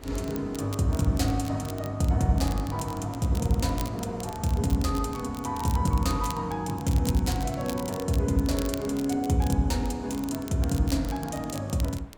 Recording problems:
wind on the microphone; below 840 Hz, SNR 25 dB
crackle; vinyl, SNR 16 dB

